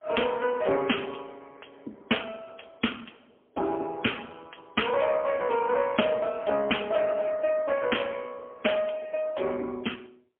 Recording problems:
phone line; 220 Hz to 3.3 kHz, AMR-NB, then MP3

